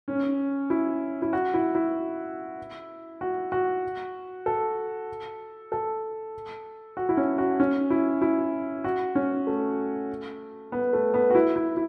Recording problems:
none

